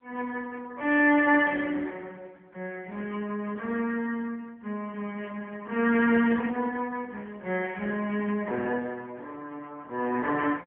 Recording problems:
phone line; 300 Hz to 3.2 kHz, AMR-NB

